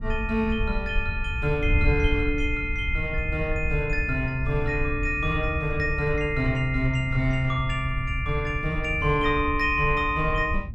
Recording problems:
wind noise; below 78 Hz, SNR 6 dB

